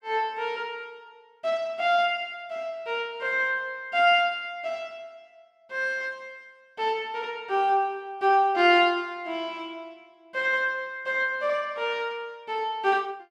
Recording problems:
none

